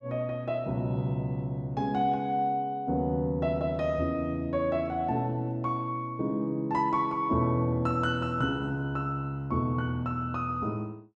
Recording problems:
none

